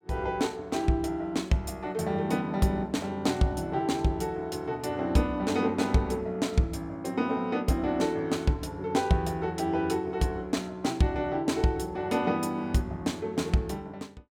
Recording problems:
none

